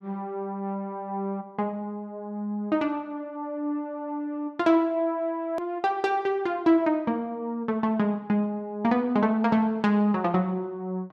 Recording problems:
hard cut with a click; at 5.5 s

